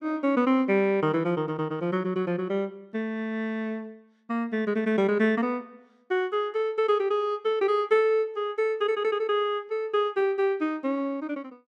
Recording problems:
none

